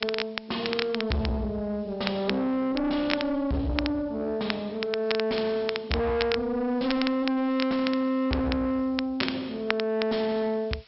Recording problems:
treble cut off; nothing above 5.4 kHz
distortion; soft clipping, signal-to-distortion ratio 7 dB
background hiss; slope +2 dB per octave, SNR 30 dB
crackling; vinyl, SNR 8 dB

